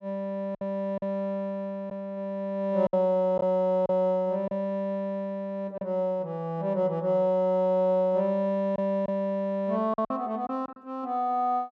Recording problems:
packet loss; 4% of the sound replaced, filled with silence

